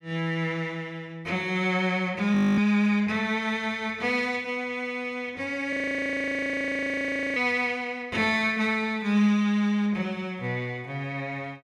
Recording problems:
audio freezing; at 2.5 s and at 5.5 s for 1.5 s

